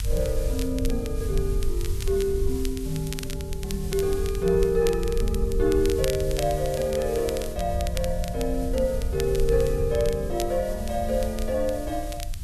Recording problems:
background hiss; slope +2 dB per octave, SNR 17 dB
rumble; below 72 Hz, SNR 5 dB
crackle; vinyl, SNR 14 dB

